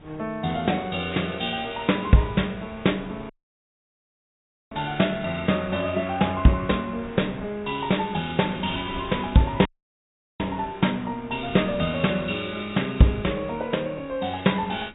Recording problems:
low-pass filter; nothing above 3.8 kHz
lossy compression; Vorbis, log-spectral distance 4 dB
wind noise; below 620 Hz, SNR 22 dB
audio cutting out; at 3.5 s for 1.5 s and at 9.5 s for 0.5 s

